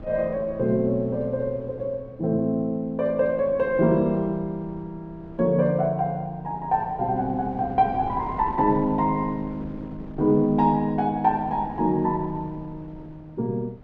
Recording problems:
wind on the microphone; below 350 Hz, SNR 18 dB

